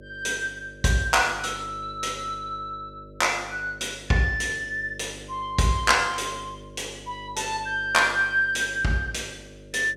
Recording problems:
mains hum; 50 Hz, harmonics up to 600 Hz, SNR 19 dB

